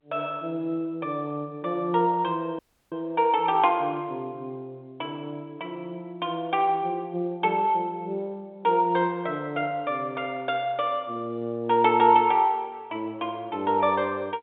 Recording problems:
phone line; 190 Hz to 3.7 kHz, G.711
audio cutting out; at 2.5 s

